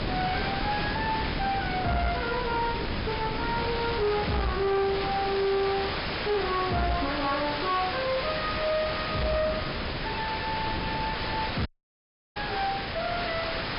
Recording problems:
treble missing; nothing above 5.5 kHz
distortion; soft clipping, signal-to-distortion ratio 10 dB
background hiss; SNR 3 dB
wind on the microphone; below 430 Hz, SNR 6 dB
audio cutting out; at 12 s for 0.5 s

